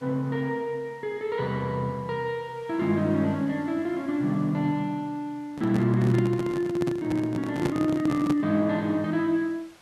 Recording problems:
background hiss; SNR 29 dB
microphone handling noise; from 5.5 to 8.5 s; peak +2 dB vs average level

